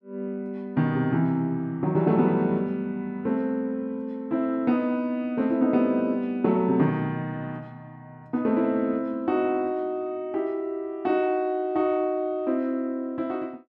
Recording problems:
none

